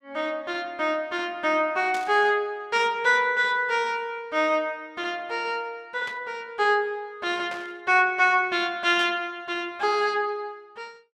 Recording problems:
static burst; 4 times, first at 2 s; peak -9 dB vs average level

